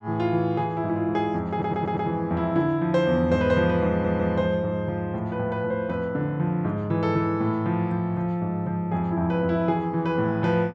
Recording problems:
audio stuttering; at 1.5 s and at 4 s

